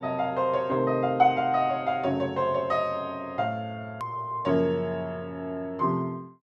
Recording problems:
hard cut with a click; at 4 s

